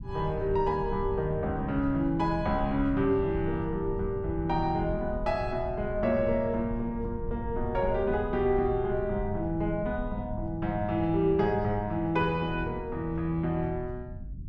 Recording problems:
low-frequency rumble; below 110 Hz, SNR 10 dB

